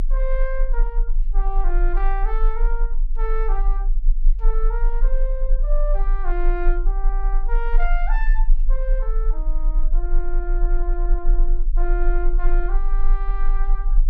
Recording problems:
rumble; below 32 Hz, strongest tone 22 Hz, SNR -9 dB

